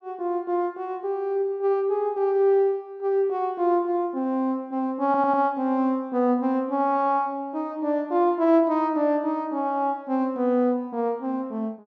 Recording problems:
stutter; at 5 s

